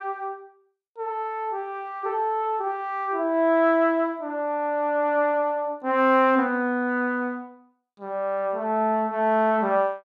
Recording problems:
none

